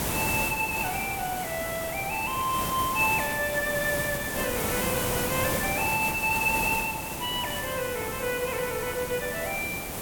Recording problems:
background hiss; slope -5 dB per octave, SNR 2 dB

